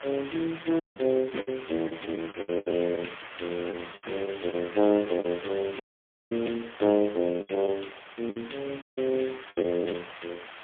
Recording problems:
phone line; 220 Hz to 3.3 kHz, AMR-NB, then MP3
hiss; SNR 13 dB
lost packets; 9% of the sound replaced, filled with the last packet
audio cutting out; at 1 s, at 6 s for 0.5 s and at 9 s

